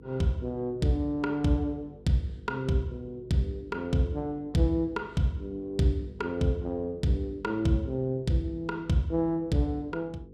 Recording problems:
hum; 50 Hz, harmonics up to 500 Hz, SNR 21 dB

